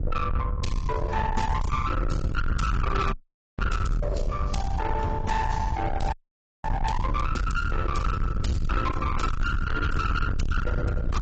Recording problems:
lossy codec; AAC, log-spectral distance 2 dB, nothing above 7.6 kHz
distortion; soft clipping, signal-to-distortion ratio 6 dB
rumble; below 140 Hz, SNR 1 dB
frozen audio; at 3 s and at 6 s for 0.5 s

